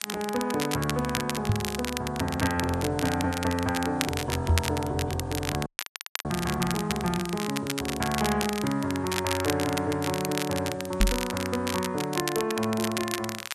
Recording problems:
codec artefacts; MP3, log-spectral distance 5 dB
hiss; slope +1 dB per octave, SNR 27 dB
crackle; vinyl, SNR 5 dB
knock on the microphone; at 1.5 s, at 4.5 s and at 11 s; peak +7 dB vs average level
audio freezing; at 5.5 s for 0.5 s

